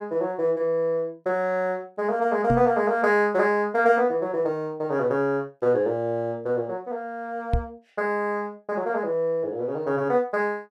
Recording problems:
microphone bump; at 2.5 s and at 7.5 s; peak +4 dB vs average level

